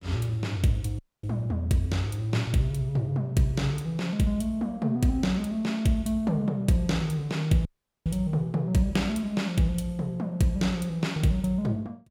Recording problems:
audio cutting out; at 1 s and at 7.5 s

